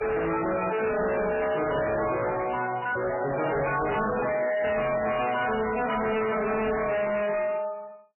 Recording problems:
lossy compression; MP3, log-spectral distance 6 dB, nothing above 2.9 kHz
distorted audio; hard clipping, signal-to-distortion ratio 5 dB

